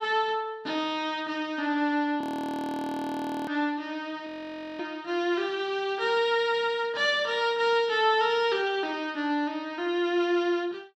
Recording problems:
frozen audio; at 2 s for 1.5 s and at 4.5 s for 0.5 s

